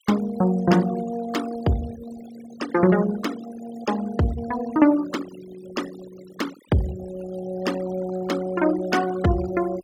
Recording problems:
noise reduction artefacts; signal-to-artefact ratio 15 dB

